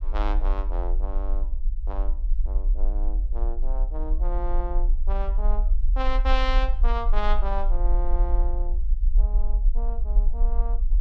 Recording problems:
rumble; below 42 Hz, SNR -7 dB

